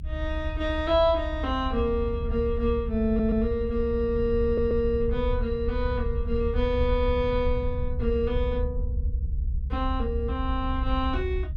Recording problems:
low-frequency rumble; below 70 Hz, SNR 4 dB
audio stuttering; at 3 s and at 4.5 s

